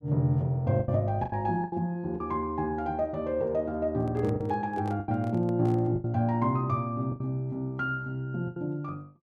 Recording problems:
packet loss; 7% of the sound replaced, filled with the last packet
handling noise; from 4 to 6 s; peak -9 dB vs average level

